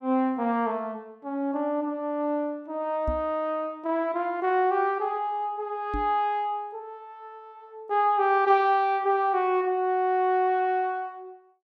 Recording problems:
microphone bump; at 3 s and at 6 s; peak -2 dB vs average level

